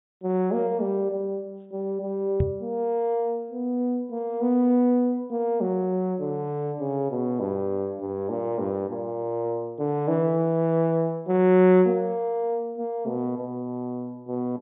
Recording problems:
treble missing; nothing above 4 kHz
microphone thump; at 2.5 s; peak +4 dB vs average level

